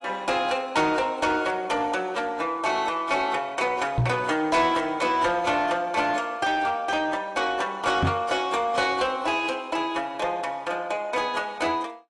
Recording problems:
lossy compression; AAC, log-spectral distance 3 dB, nothing above 10.7 kHz
distorted audio; soft clipping, signal-to-distortion ratio 12 dB
microphone thump; at 4 s and at 8 s; peak +5 dB vs average level

